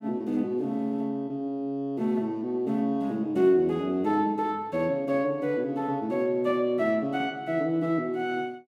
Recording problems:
none

